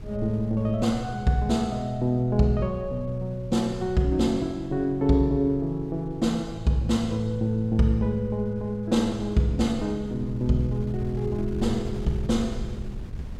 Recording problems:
wind on the microphone; below 98 Hz, SNR 15 dB

